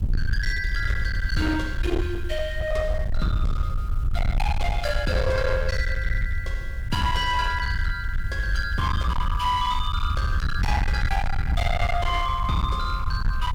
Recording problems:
distorted audio; hard clipping, uneven, signal-to-distortion ratio 7 dB
background hiss; slope -4 dB per octave, SNR 25 dB
low-frequency rumble; below 80 Hz, SNR 1 dB

